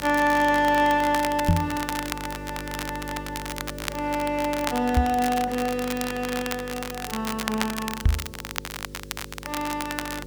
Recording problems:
hum; 50 Hz, harmonics up to 550 Hz, SNR 14 dB
hiss; slope -1 dB per octave, SNR 28 dB
crackling; vinyl, SNR 8 dB
microphone thump; at 1.5 s, at 5 s and at 8 s; peak +8 dB vs average level

